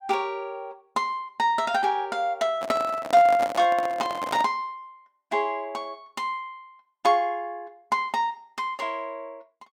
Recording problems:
microphone handling noise; from 2.5 to 4.5 s; peak -2 dB vs average level

